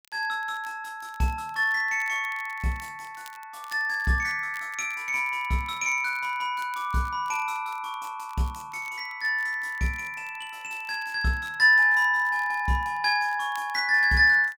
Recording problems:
crackling; vinyl, SNR 27 dB

